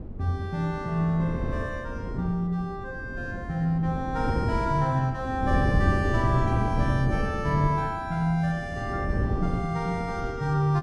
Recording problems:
wind on the microphone; below 230 Hz, SNR 4 dB

